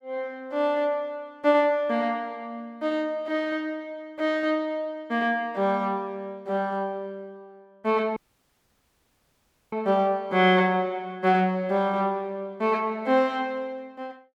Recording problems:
dropout; at 8 s for 1.5 s

